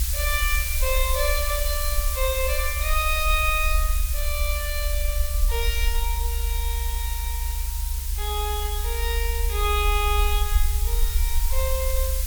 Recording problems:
background hiss; slope +5 dB per octave, SNR 2 dB
rumble; below 66 Hz, SNR -1 dB

